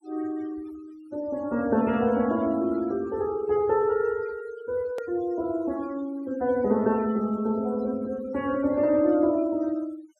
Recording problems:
denoising artefacts; signal-to-artefact ratio 22 dB
click at an edit; at 5 s

